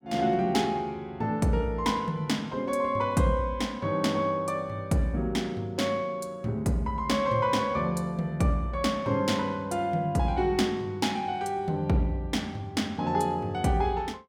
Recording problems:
none

